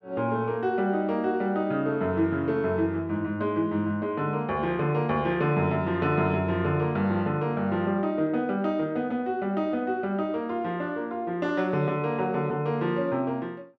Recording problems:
none

